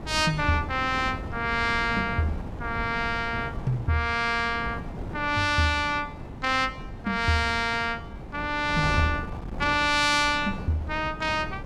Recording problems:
wind noise; below 320 Hz, SNR 11 dB

